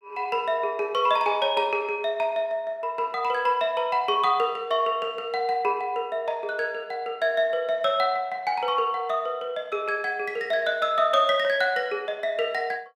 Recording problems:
none

